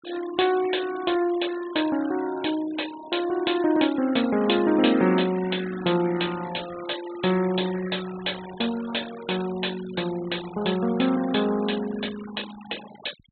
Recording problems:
treble missing; nothing above 4 kHz
denoising artefacts; signal-to-artefact ratio 16 dB

